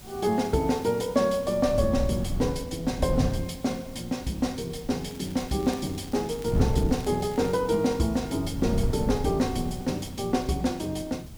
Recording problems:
background hiss; SNR 22 dB
wind noise; below 170 Hz, SNR 6 dB
crackle; from 5 to 7.5 s; loose cable, SNR 22 dB

